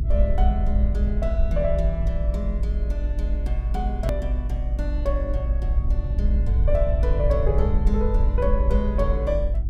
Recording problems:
hum; 50 Hz, harmonics up to 350 Hz, SNR 9 dB
low-frequency rumble; below 58 Hz, SNR -5 dB
edit click; at 4 s

